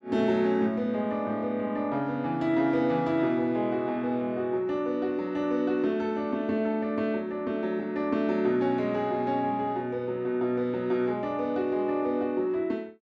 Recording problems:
none

